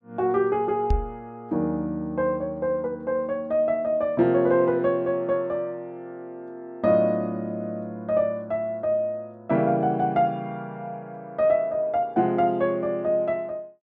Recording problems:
knock on the microphone; at 1 s; peak +4 dB vs average level

